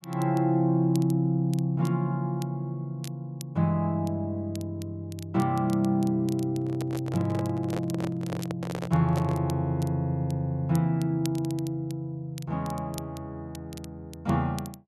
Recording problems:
crackle; vinyl, SNR 21 dB
handling noise; from 6.5 to 9.5 s; peak -3 dB vs average level

